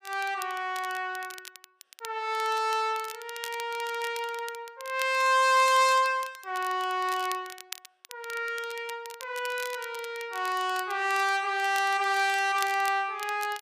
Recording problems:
crackling; vinyl, SNR 17 dB

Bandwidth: 15 kHz